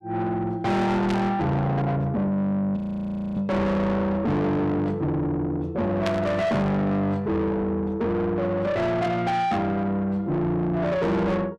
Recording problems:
distortion; soft clipping, signal-to-distortion ratio 7 dB
burst of static; at 1 s and at 6 s; peak -3 dB vs average level
frozen audio; at 3 s for 0.5 s

